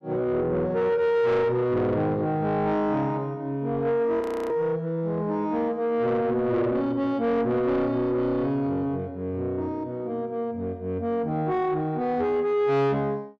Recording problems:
distorted audio; soft clipping, signal-to-distortion ratio 10 dB
audio freezing; at 4 s

